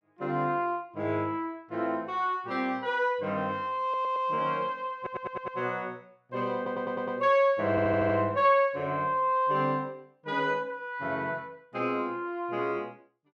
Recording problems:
audio stuttering; 4 times, first at 4 s

